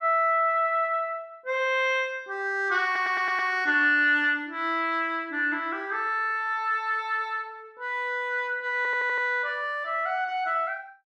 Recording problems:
stutter; at 3 s and at 9 s

